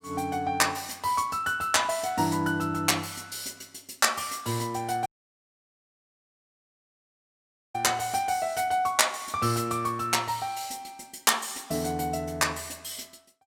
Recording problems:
audio cutting out; at 5 s for 2.5 s

